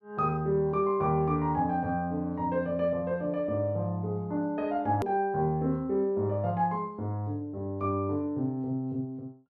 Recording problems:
click at an edit; at 5 s

